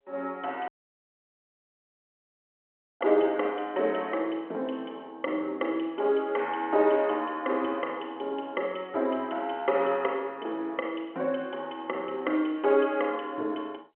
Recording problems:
phone line; 260 Hz to 3.3 kHz, G.711
dropout; at 0.5 s for 2.5 s

